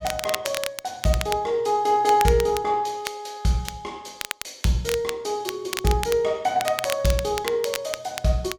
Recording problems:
crackle; vinyl, SNR 9 dB

